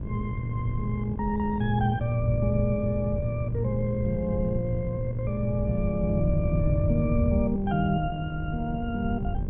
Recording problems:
mains hum; 50 Hz, harmonics up to 1.7 kHz, SNR 18 dB
wind noise; below 140 Hz, SNR 4 dB

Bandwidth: 3.5 kHz